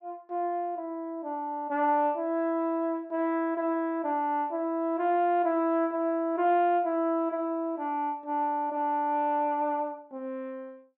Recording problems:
none

